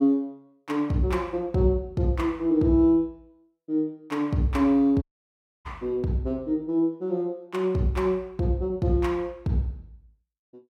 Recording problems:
dropout; at 5 s for 0.5 s

